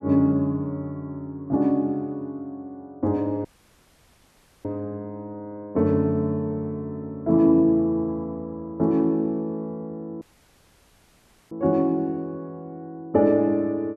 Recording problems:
audio cutting out; at 3.5 s for 1 s and at 10 s for 1.5 s

